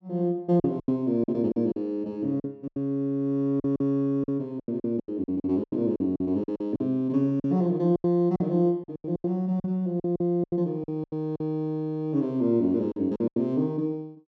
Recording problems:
packet loss; 14% of the sound replaced, filled with silence

